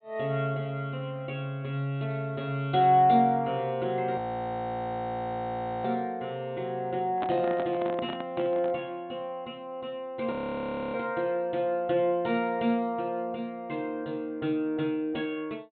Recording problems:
treble cut off; nothing above 4 kHz
frozen audio; at 4 s for 1.5 s and at 10 s for 0.5 s
microphone handling noise; from 7 to 8.5 s; peak -1 dB vs average level

